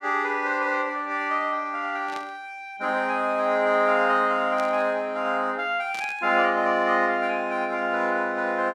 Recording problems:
burst of static; at 2 s, at 4.5 s and at 6 s; peak -11 dB vs average level

